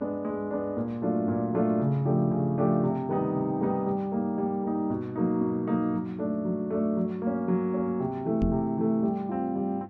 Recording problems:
hum; 50 Hz, harmonics up to 900 Hz, SNR 23 dB
knock on the microphone; at 8.5 s; peak +3 dB vs average level

